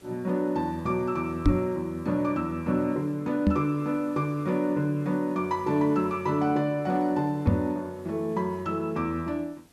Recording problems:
hiss; slope -3 dB per octave, SNR 29 dB
knock on the microphone; at 1.5 s, at 3.5 s and at 7.5 s; peak +9 dB vs average level

